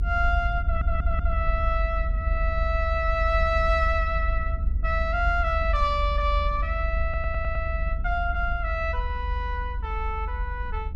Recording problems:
low-frequency rumble; below 70 Hz, strongest tone 46 Hz, SNR 1 dB
audio stuttering; at 0.5 s and at 7 s

